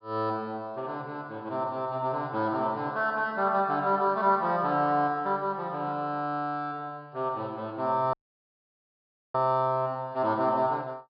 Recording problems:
treble missing; nothing above 5.3 kHz
audio cutting out; at 8 s for 1 s

